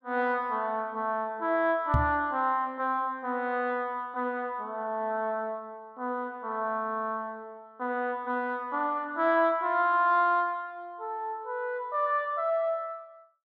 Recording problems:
microphone bump; at 2 s; peak +7 dB vs average level

